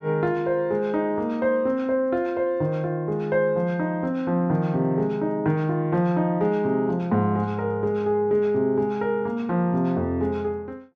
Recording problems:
none

